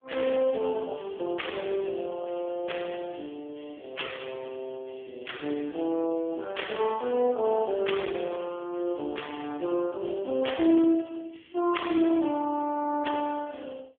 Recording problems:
phone line; 240 Hz to 3.4 kHz, AMR-NB

